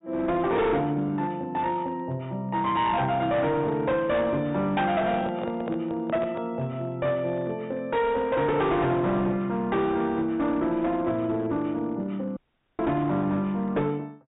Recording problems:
low-pass filter; nothing above 4 kHz
distortion; hard clipping, uneven, signal-to-distortion ratio 10 dB
handling noise; from 5 to 6.5 s; peak -5 dB vs average level
audio cutting out; at 12 s

